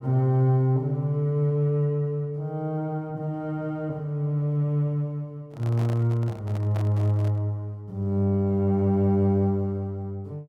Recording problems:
handling noise; from 5.5 to 7.5 s; peak -9 dB vs average level

